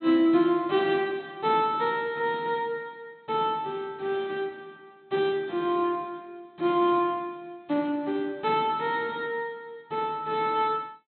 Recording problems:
treble cut off; nothing above 4.2 kHz

